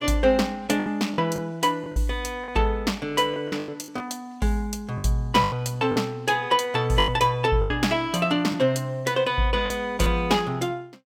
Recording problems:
packet loss; 8% of the sound replaced, filled with the last packet

